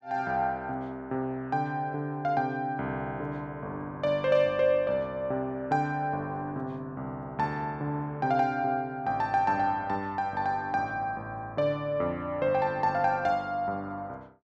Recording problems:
none

